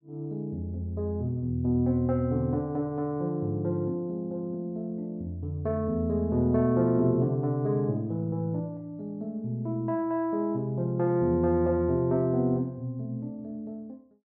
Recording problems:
none

